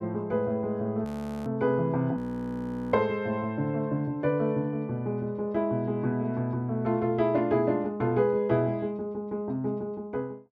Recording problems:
audio freezing; at 1 s and at 2 s for 1 s

